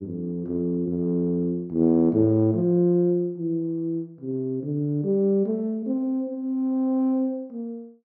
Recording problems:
none

